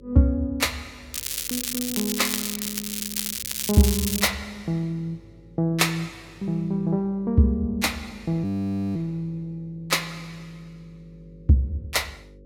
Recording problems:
hum; 50 Hz, harmonics up to 550 Hz, SNR 25 dB
crackling; from 1 to 4.5 s; loose cable, SNR 2 dB
frozen audio; at 8.5 s for 0.5 s

